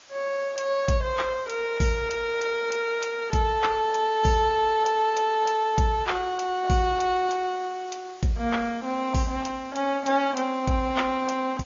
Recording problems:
treble cut off; nothing above 6.9 kHz
lossy compression; AAC, log-spectral distance 4 dB
background hiss; SNR 24 dB

